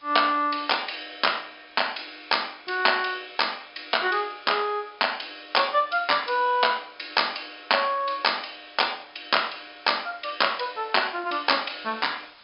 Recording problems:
treble cut off; nothing above 5.5 kHz
background hiss; SNR 28 dB

